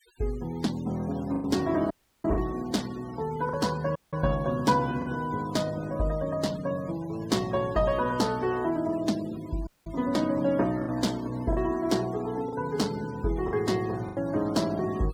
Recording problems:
noise reduction artefacts; signal-to-artefact ratio 19 dB
packet loss; 3% of the sound replaced, filled with the last packet
audio cutting out; at 2 s, at 4 s and at 9.5 s

